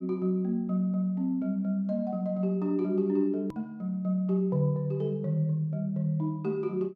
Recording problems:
click at an edit; at 3.5 s

